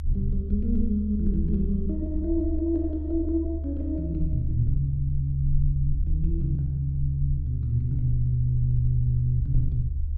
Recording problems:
rumble; below 74 Hz, SNR 3 dB

